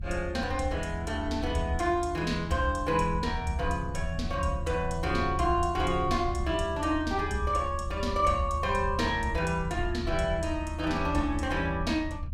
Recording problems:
low-frequency rumble; below 78 Hz, SNR 7 dB

